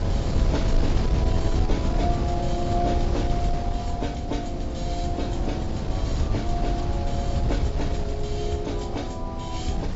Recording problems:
lossy compression; AAC, log-spectral distance 2 dB, nothing above 7.6 kHz
wind on the microphone; below 120 Hz, SNR -4 dB

